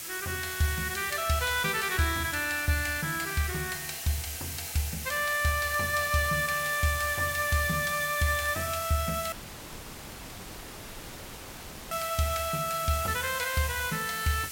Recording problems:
hiss; SNR 7 dB
crackling; vinyl, SNR 30 dB
audio cutting out; at 9.5 s for 2.5 s

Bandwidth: 16.5 kHz